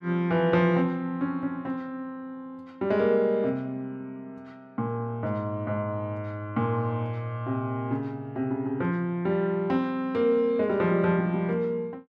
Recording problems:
none

